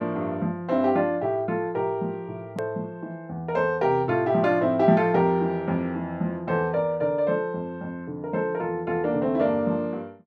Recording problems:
hard cut with a click; at 2.5 s

